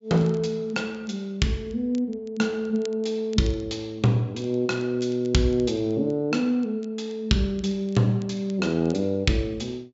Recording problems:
treble missing; nothing above 8 kHz
crackle; vinyl, SNR 28 dB

